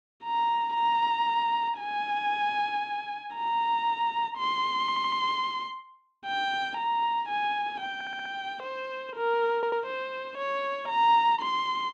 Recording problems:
audio stuttering; at 5 s, at 8 s and at 9.5 s

